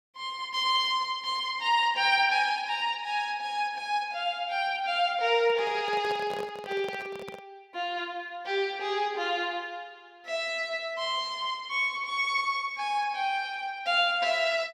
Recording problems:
handling noise; from 5.5 to 7.5 s; peak -7 dB vs average level

